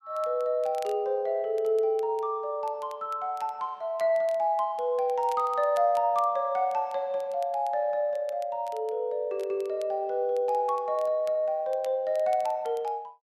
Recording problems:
crackle; vinyl, SNR 27 dB

